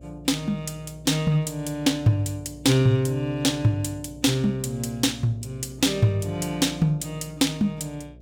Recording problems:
hum; 60 Hz, harmonics up to 660 Hz, SNR 22 dB

